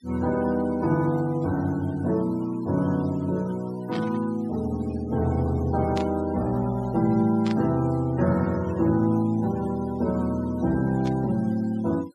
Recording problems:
noise reduction artefacts; signal-to-artefact ratio 21 dB
static burst; 4 times, first at 4 s; peak -8 dB vs average level

